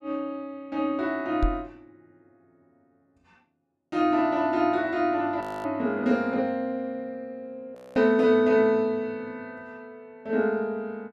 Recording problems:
microphone bump; at 1.5 s; peak +2 dB vs average level
frozen audio; at 5.5 s and at 8 s

